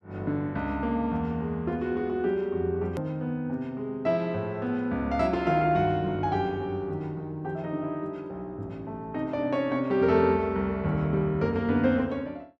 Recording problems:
edit click; at 3 s

